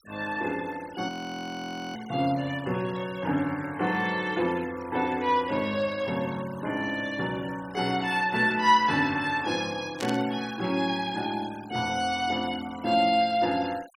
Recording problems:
denoising artefacts; signal-to-artefact ratio 20 dB
frozen audio; at 1 s for 1 s
burst of static; at 10 s; peak -4 dB vs average level

